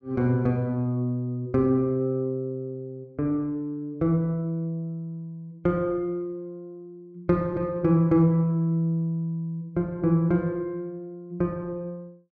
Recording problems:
none

